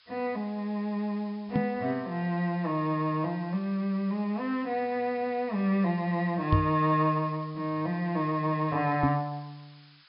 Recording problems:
low-pass filter; nothing above 5.5 kHz
background hiss; SNR 27 dB
microphone thump; at 1.5 s, at 6.5 s and at 9 s; peak +7 dB vs average level

